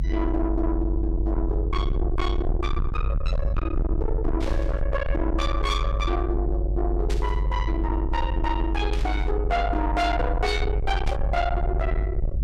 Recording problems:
distorted audio; soft clipping, signal-to-distortion ratio 6 dB
electrical hum; 50 Hz, harmonics up to 400 Hz, SNR 19 dB
rumble; below 78 Hz, strongest tone 50 Hz, SNR 0 dB
static burst; 4 times, first at 4.5 s; peak -6 dB vs average level

